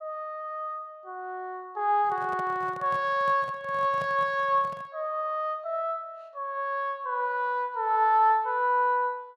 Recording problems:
microphone handling noise; from 2 to 5 s; peak -9 dB vs average level

